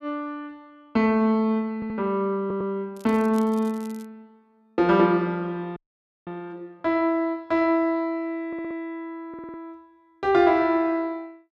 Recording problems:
stutter; 4 times, first at 1.5 s
crackle; from 3 to 4 s; loose cable, SNR 26 dB
audio freezing; at 6 s for 0.5 s

